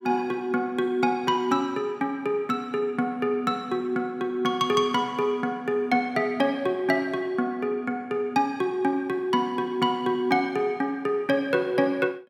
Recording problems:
none

